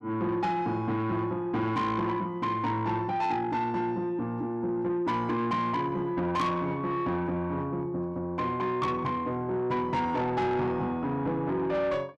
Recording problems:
distorted audio; soft clipping, signal-to-distortion ratio 11 dB

